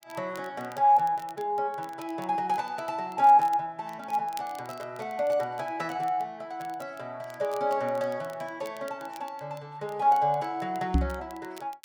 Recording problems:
crackling; vinyl, SNR 25 dB
knock on the microphone; at 11 s; peak +7 dB vs average level

